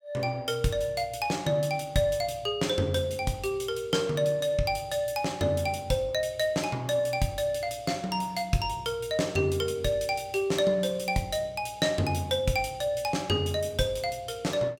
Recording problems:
none

